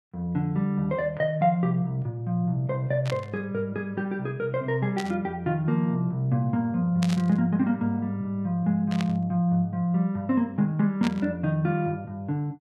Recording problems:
burst of static; 5 times, first at 3 s; peak -3 dB vs average level

